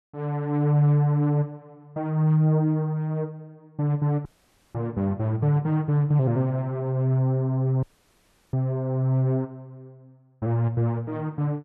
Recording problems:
dropout; at 4.5 s and at 8 s for 0.5 s

